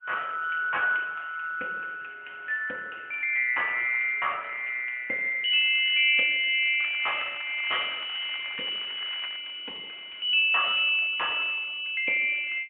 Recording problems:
phone line; 240 Hz to 3.3 kHz, AMR-NB, then MP3
crackling; from 7 to 9.5 s; loose cable, SNR 16 dB

